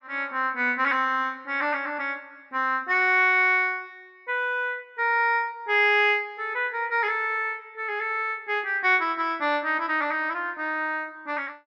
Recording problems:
none

